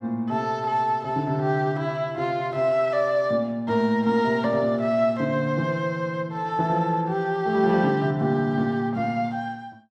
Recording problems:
none

